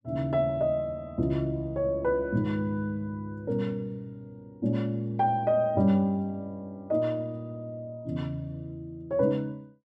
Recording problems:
none

